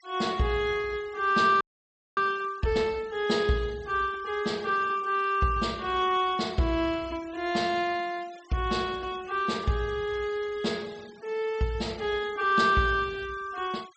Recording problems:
treble missing; nothing above 8 kHz
noise reduction artefacts; signal-to-artefact ratio 23 dB
audio freezing; at 1.5 s for 0.5 s

